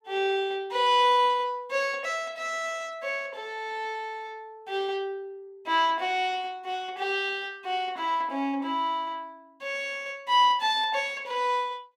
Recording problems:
none

